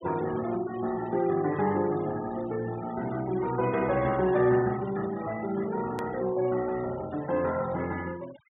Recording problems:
treble cut off; nothing above 4 kHz
denoising artefacts; signal-to-artefact ratio 17 dB
edit click; at 6 s

